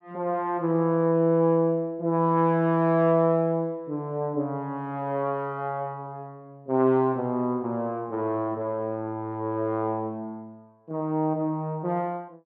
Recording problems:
none

